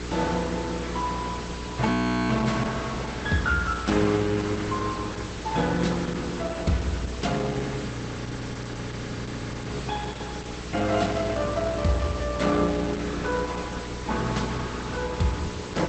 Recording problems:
lossy codec; Opus, log-spectral distance 8 dB, nothing above 8 kHz
electrical hum; 60 Hz, harmonics up to 480 Hz, SNR 9 dB
hiss; slope -3 dB per octave, SNR 10 dB
frozen audio; at 2 s and at 8 s for 2 s

